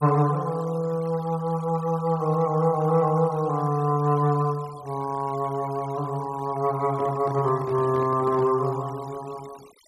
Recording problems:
noise reduction artefacts; signal-to-artefact ratio 24 dB
microphone handling noise; from 7 to 8.5 s; peak -9 dB vs average level

